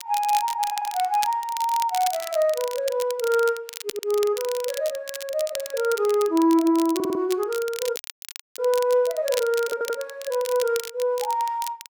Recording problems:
crackling; vinyl, SNR 12 dB
stutter; 4 times, first at 0.5 s
audio cutting out; at 8 s for 0.5 s

